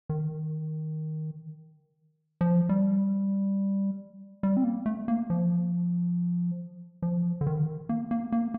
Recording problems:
none

